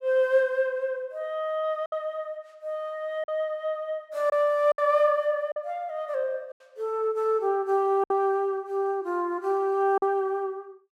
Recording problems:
packet loss; 4% of the sound replaced, filled with silence

